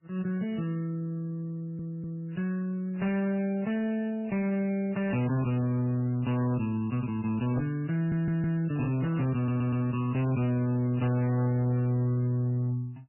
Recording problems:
codec artefacts; Vorbis, then MP3, log-spectral distance 2 dB, nothing above 2.9 kHz
distorted audio; hard clipping, signal-to-distortion ratio 9 dB
audio stuttering; at 1.5 s, at 8 s and at 9.5 s

